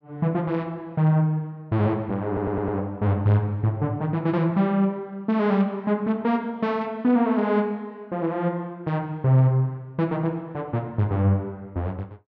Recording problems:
stutter; at 2.5 s

